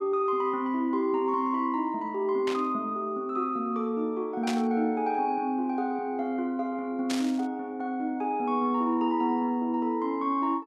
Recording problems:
static burst; at 2.5 s, at 4.5 s and at 7 s; peak -2 dB vs average level

